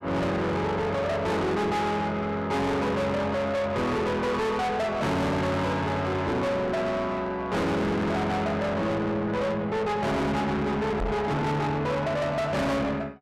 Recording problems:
distortion; soft clipping, signal-to-distortion ratio 6 dB
microphone bump; at 11 s; peak +3 dB vs average level

